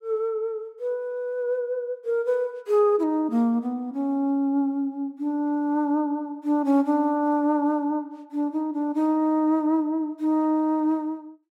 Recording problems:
none

